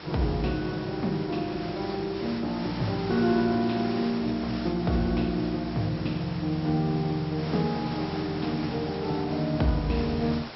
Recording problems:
low-pass filter; nothing above 5.5 kHz
background hiss; slope -3 dB per octave, SNR 12 dB

